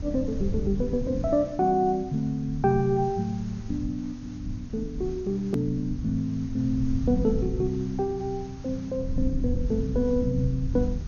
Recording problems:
lossy codec; MP2, log-spectral distance 4 dB, nothing above 13.1 kHz
background hiss; slope -2 dB per octave, SNR 26 dB
rumble; below 110 Hz, SNR 8 dB
hard cut with a click; at 5.5 s

